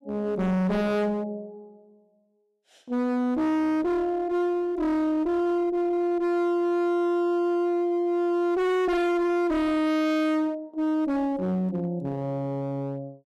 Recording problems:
distorted audio; hard clipping, uneven, signal-to-distortion ratio 6 dB

